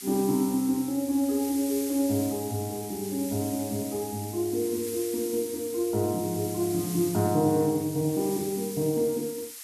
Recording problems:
background hiss; slope +5 dB per octave, SNR 10 dB

